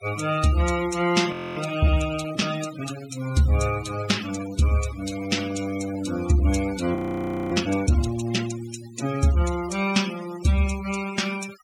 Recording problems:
noise reduction artefacts; signal-to-artefact ratio 13 dB
audio freezing; at 1.5 s and at 7 s for 0.5 s

